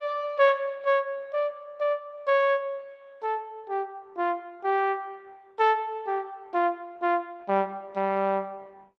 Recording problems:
lossy compression; MP3, then Opus, log-spectral distance 2 dB

